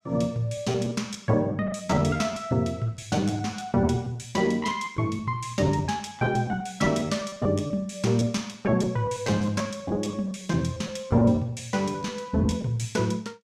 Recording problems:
lost packets; 13% of the sound replaced, filled with repeated pitch periods

